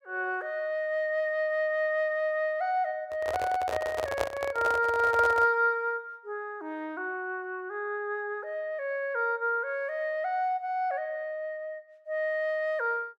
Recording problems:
microphone handling noise; from 3 to 5.5 s; peak +3 dB vs average level

